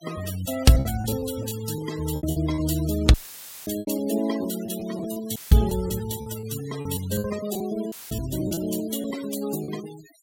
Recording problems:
noise reduction artefacts; signal-to-artefact ratio 14 dB
packet loss; 10% of the sound replaced, filled with repeated pitch periods
audio cutting out; at 3 s for 0.5 s, at 5.5 s and at 8 s; filled with static

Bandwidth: 16.5 kHz